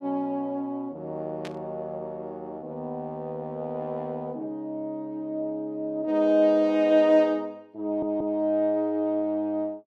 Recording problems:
static burst; at 1.5 s; peak -10 dB vs average level
stutter; at 8 s

